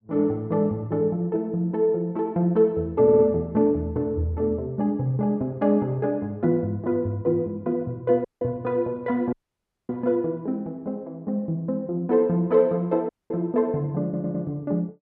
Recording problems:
audio stuttering; at 3 s and at 14 s
audio cutting out; at 8.5 s, at 9.5 s for 0.5 s and at 13 s

